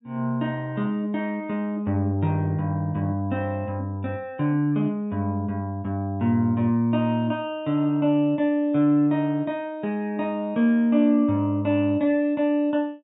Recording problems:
treble missing; nothing above 4 kHz

